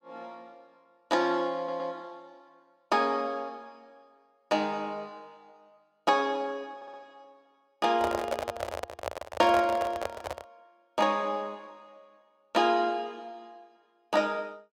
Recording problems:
stutter; at 1.5 s and at 7 s
handling noise; from 8 to 10 s; peak +2 dB vs average level

